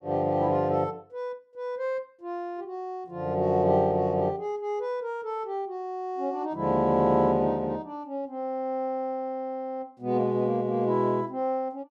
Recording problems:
none

